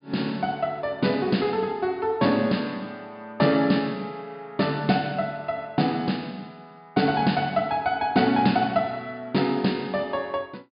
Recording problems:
low-pass filter; nothing above 5.1 kHz

